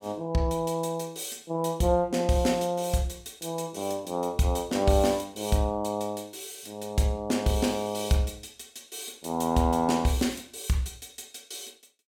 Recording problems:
none

